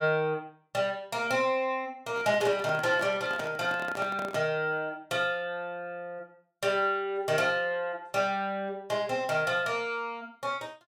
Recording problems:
handling noise; from 2 to 4.5 s; peak -6 dB vs average level

